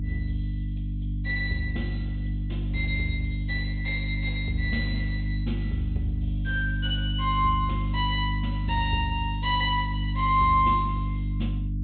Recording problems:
low-pass filter; nothing above 4 kHz
hum; 50 Hz, harmonics up to 300 Hz, SNR 1 dB

